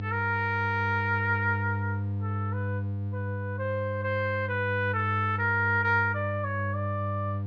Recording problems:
hum; 50 Hz, harmonics up to 500 Hz, SNR 4 dB

